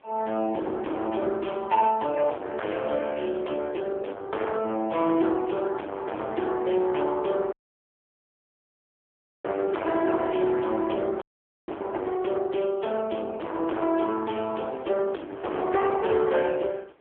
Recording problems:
phone line; 260 Hz to 2.6 kHz, AMR-NB
distorted audio; hard clipping, signal-to-distortion ratio 8 dB
wind on the microphone; below 1.1 kHz, SNR 24 dB
audio cutting out; at 7.5 s for 2 s and at 11 s

